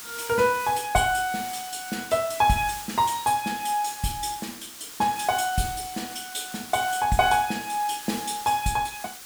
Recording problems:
background hiss; slope +1 dB per octave, SNR 12 dB

